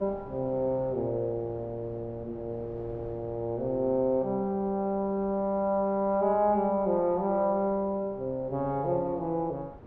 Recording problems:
wind noise; below 560 Hz, SNR 20 dB

